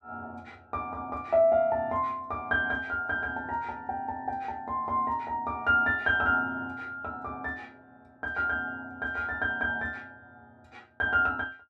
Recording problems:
none

